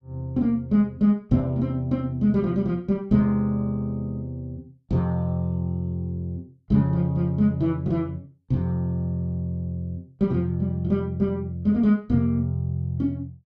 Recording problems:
none

